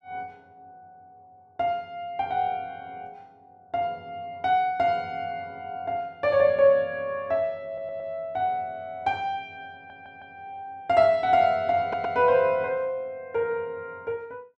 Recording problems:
stutter; at 7.5 s, at 9.5 s and at 12 s

